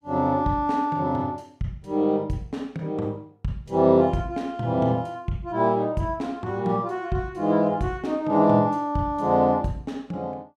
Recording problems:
none

